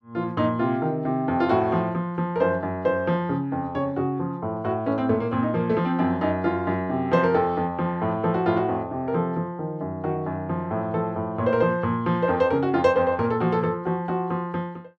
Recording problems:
none

